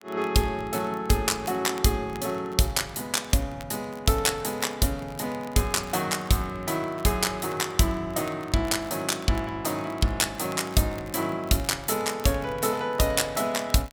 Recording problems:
crackling; vinyl, SNR 24 dB

